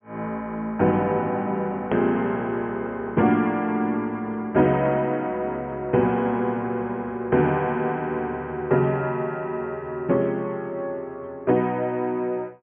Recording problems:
treble missing; nothing above 3.3 kHz
click at an edit; at 2 s

